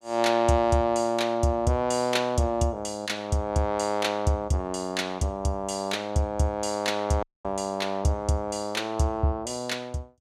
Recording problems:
audio cutting out; at 7 s

